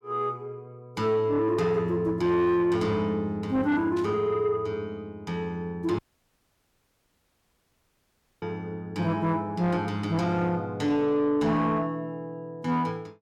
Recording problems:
distortion; soft clipping, signal-to-distortion ratio 10 dB
static burst; at 4 s; peak -14 dB vs average level
audio cutting out; at 6 s for 2.5 s

